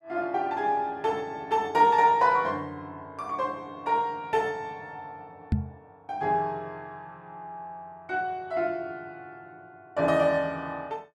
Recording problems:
microphone thump; at 5.5 s; peak +5 dB vs average level

